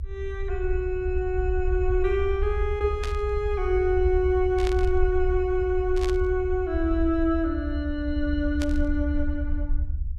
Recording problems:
low-frequency rumble; below 72 Hz, SNR 4 dB
burst of static; 4 times, first at 3 s; peak -5 dB vs average level

